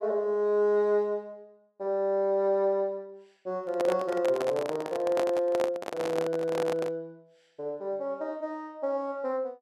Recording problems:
microphone handling noise; from 3.5 to 7 s; peak 0 dB vs average level

